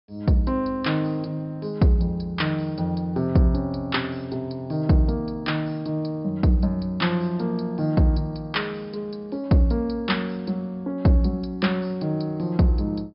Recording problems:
treble missing; nothing above 5.5 kHz

